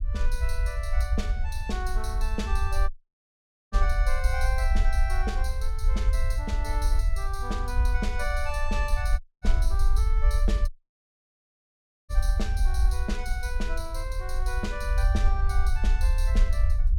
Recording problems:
low-frequency rumble; below 56 Hz, SNR -7 dB
audio cutting out; at 3 s for 1 s, at 9 s and at 11 s for 1.5 s

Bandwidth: 16.5 kHz